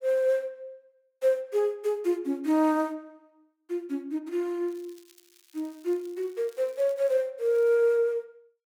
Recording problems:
crackle; from 4.5 to 7 s and at 7.5 s; loose cable, SNR 29 dB

